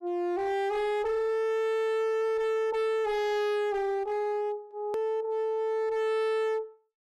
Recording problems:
distorted audio; hard clipping, signal-to-distortion ratio 8 dB
click at an edit; at 5 s

